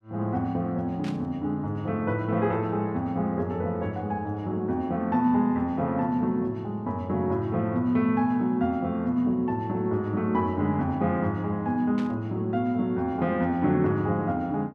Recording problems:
burst of static; at 1 s and at 12 s; peak -11 dB vs average level

